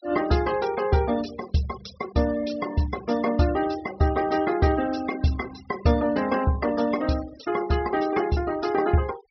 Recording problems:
low-pass filter; nothing above 5.5 kHz
denoising artefacts; signal-to-artefact ratio 17 dB

